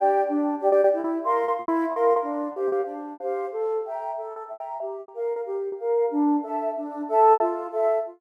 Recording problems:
packet loss; 11% of the sound replaced, filled with repeated pitch periods

